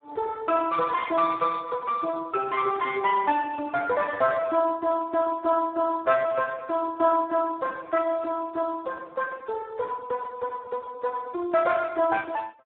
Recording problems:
telephone audio; 240 Hz to 2.3 kHz, Speex

